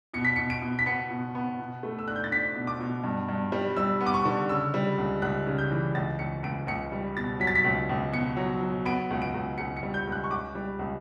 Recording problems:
none

